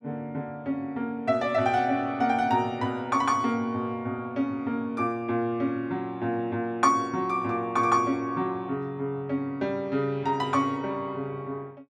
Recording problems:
none

